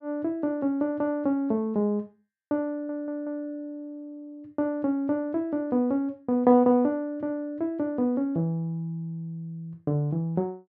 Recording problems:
stutter; at 2.5 s

